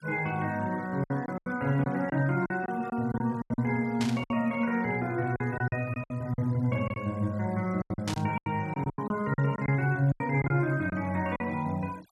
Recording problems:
noise reduction artefacts; signal-to-artefact ratio 24 dB
lost packets; 11% of the sound replaced, filled with silence
static burst; at 4 s and at 8 s; peak -2 dB vs average level

